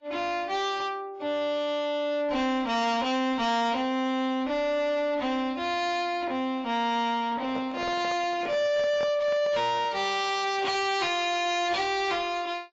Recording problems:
codec artefacts; AAC, log-spectral distance 2 dB, nothing above 7.3 kHz
distorted audio; soft clipping, signal-to-distortion ratio 7 dB
handling noise; from 7.5 to 10 s; peak -3 dB vs average level

